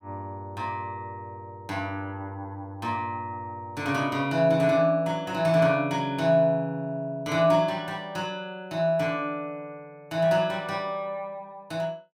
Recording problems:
none

